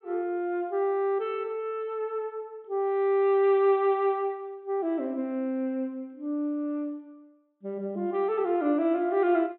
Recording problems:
treble missing; nothing above 3.7 kHz

